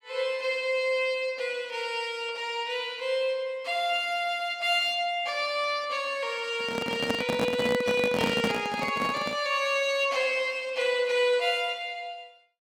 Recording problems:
microphone handling noise; from 6.5 to 9.5 s; peak +3 dB vs average level

